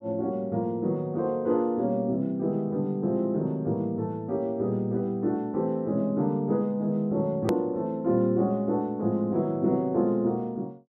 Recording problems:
click at an edit; at 7.5 s

